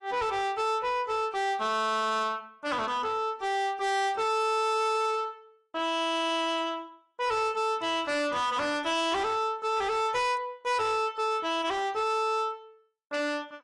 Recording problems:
lossy codec; AAC, log-spectral distance 2 dB, nothing above 10.1 kHz
distortion; soft clipping, signal-to-distortion ratio 7 dB

